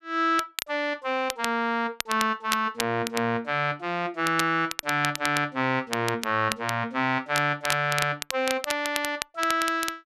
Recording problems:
crackling; vinyl, SNR 7 dB

